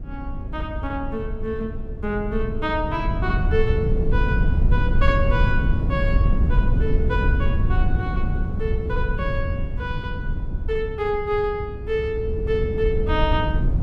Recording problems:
wind on the microphone; below 100 Hz, SNR -2 dB

